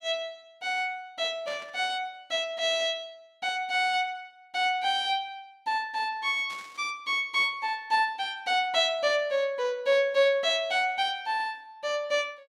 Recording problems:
static burst; at 1.5 s and at 6.5 s; peak -12 dB vs average level

